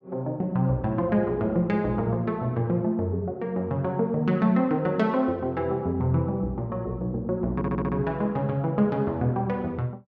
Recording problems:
audio stuttering; at 7.5 s

